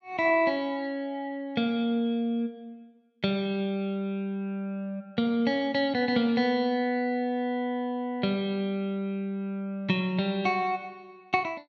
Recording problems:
none

